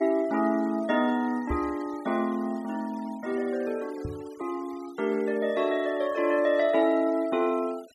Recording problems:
noise reduction artefacts; signal-to-artefact ratio 23 dB
knock on the microphone; at 1.5 s and at 4 s; peak -3 dB vs average level

